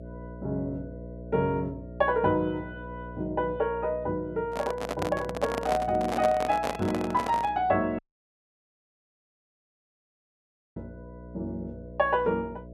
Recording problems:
hum; 60 Hz, harmonics up to 660 Hz, SNR 14 dB
handling noise; from 4.5 to 7.5 s; peak +2 dB vs average level
audio cutting out; at 8 s for 3 s

